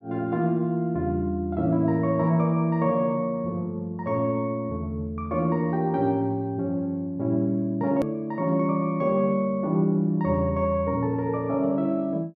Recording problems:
click at an edit; at 8 s

